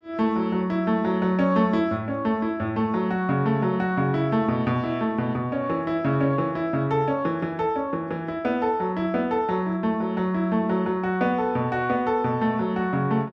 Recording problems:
none

